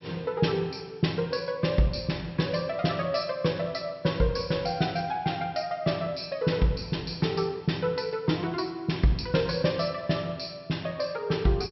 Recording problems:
low-pass filter; nothing above 5.6 kHz

